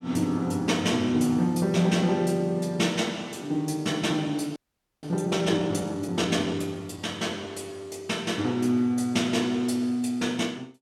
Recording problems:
frozen audio; at 4.5 s

